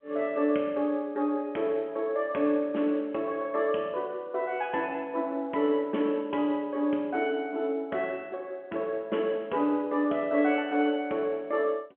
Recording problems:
phone line; 220 Hz to 3.3 kHz, G.711

